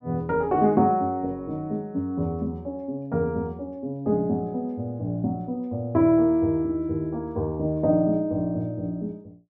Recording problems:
none

